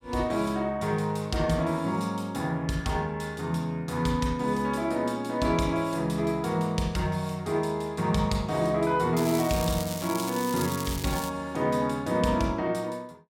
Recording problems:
crackling; from 9 to 11 s; loose cable, SNR 9 dB

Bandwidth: 16.5 kHz